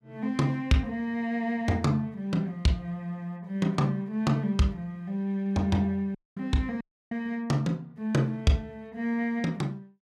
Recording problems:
audio cutting out; at 6 s and at 7 s

